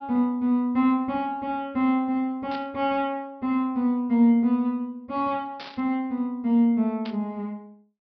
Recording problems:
treble missing; nothing above 5.5 kHz
static burst; at 2.5 s, at 5.5 s and at 7 s; peak -11 dB vs average level

